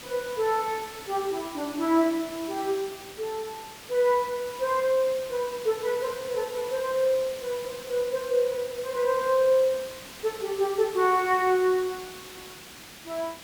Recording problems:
background hiss; slope -1 dB per octave, SNR 15 dB

